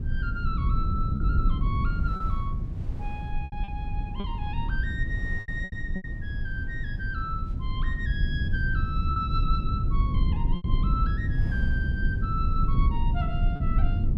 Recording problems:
low-frequency rumble; below 98 Hz, SNR -6 dB
wind noise; below 290 Hz, SNR 16 dB
packet loss; 5% of the sound replaced, filled with repeated pitch periods

